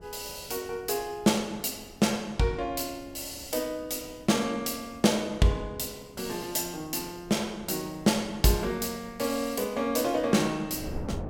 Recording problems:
wind noise; below 340 Hz, SNR 20 dB

